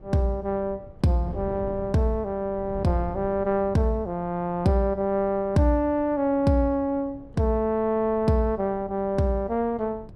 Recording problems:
wind noise; below 190 Hz, SNR 18 dB

